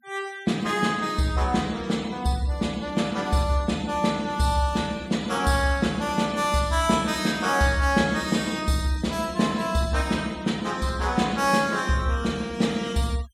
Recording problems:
noise reduction artefacts; signal-to-artefact ratio 21 dB

